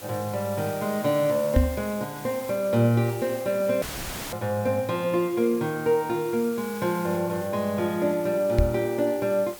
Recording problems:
background hiss; slope -2 dB per octave, SNR 16 dB
microphone bump; at 1.5 s and at 8.5 s; peak +8 dB vs average level
audio cutting out; at 4 s for 0.5 s; filled with static

